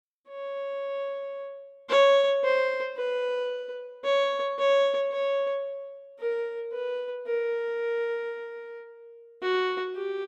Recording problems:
none

